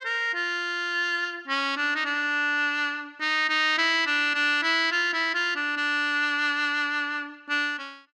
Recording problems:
none

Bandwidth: 13 kHz